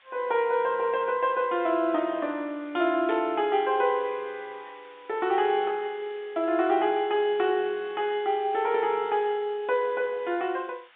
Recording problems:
telephone audio; 240 Hz to 3.8 kHz, G.711
background hiss; SNR 27 dB
burst of static; at 3 s; peak -12 dB vs average level

